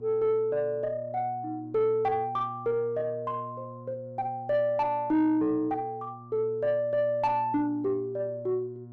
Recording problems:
distortion; soft clipping, signal-to-distortion ratio 11 dB
hum; 60 Hz, harmonics up to 720 Hz, SNR 17 dB

